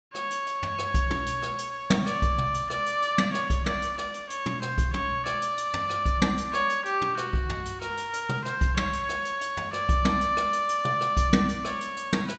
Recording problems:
treble missing; nothing above 8 kHz

